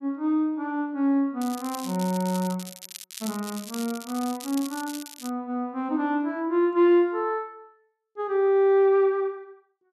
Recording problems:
crackle; from 1.5 to 5.5 s; loose cable, SNR 14 dB

